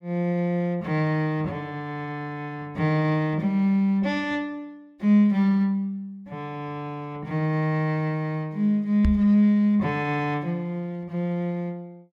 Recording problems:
microphone thump; at 9 s; peak +6 dB vs average level

